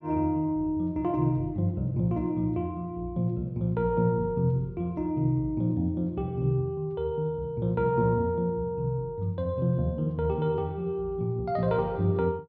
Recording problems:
none

